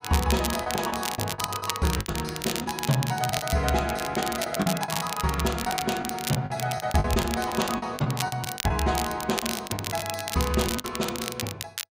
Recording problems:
crackle; vinyl, SNR 5 dB
packet loss; 13% of the sound replaced, filled with the last packet

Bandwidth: 15.5 kHz